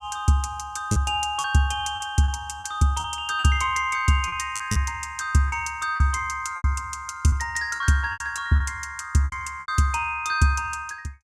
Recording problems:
packet loss; 8% of the sound replaced, filled with repeated pitch periods

